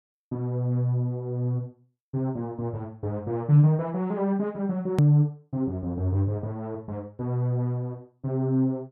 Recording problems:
edit click; at 5 s

